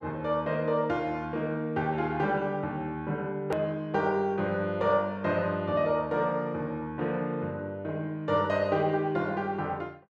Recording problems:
edit click; at 3.5 s

